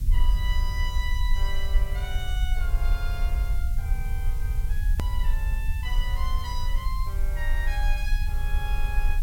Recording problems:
hiss; slope +2 dB per octave, SNR 12 dB
rumble; below 52 Hz, strongest tone 24 Hz, SNR -9 dB
hard cut with a click; at 5 s

